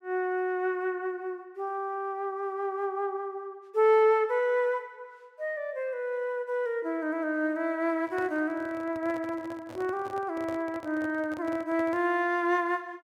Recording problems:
handling noise; from 8 to 12 s; peak -9 dB vs average level

